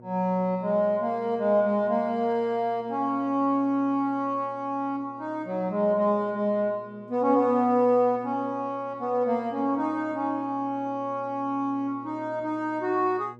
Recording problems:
hum; 60 Hz, harmonics up to 1.1 kHz, SNR 23 dB

